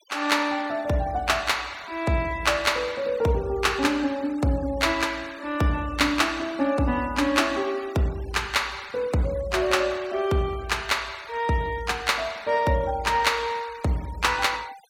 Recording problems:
noise reduction artefacts; signal-to-artefact ratio 21 dB

